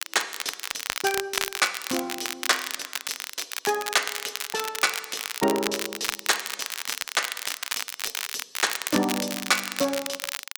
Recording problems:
crackle; vinyl, SNR 2 dB

